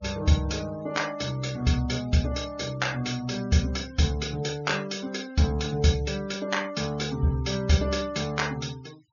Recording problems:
treble cut off; nothing above 6.8 kHz
denoising artefacts; signal-to-artefact ratio 19 dB

